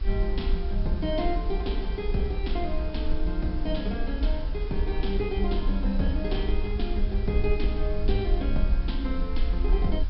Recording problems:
treble cut off; nothing above 5.4 kHz
hum; 50 Hz, harmonics up to 350 Hz, SNR 21 dB
background hiss; slope -3 dB per octave, SNR 18 dB
low-frequency rumble; below 52 Hz, SNR 0 dB

